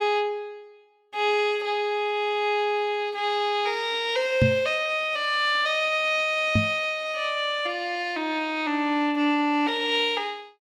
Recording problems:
microphone bump; at 4.5 s and at 6.5 s; peak +6 dB vs average level

